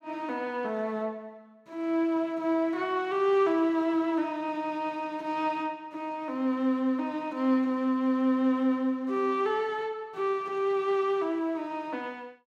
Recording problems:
none

